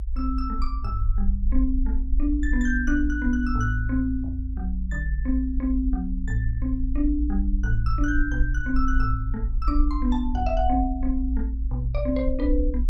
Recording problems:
low-frequency rumble; below 56 Hz, SNR 1 dB

